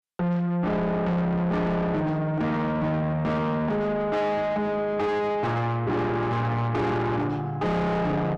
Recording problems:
distorted audio; soft clipping, signal-to-distortion ratio 7 dB

